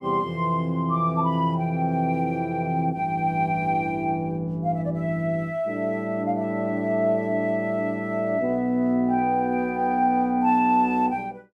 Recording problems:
none

